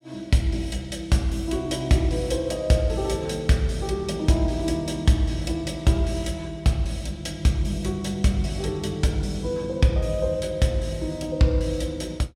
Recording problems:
none

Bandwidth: 16 kHz